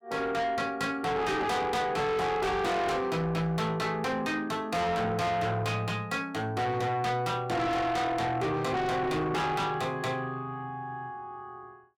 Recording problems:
distortion; soft clipping, signal-to-distortion ratio 6 dB

